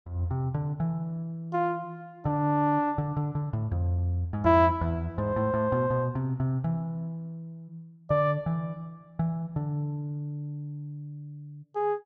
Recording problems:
none

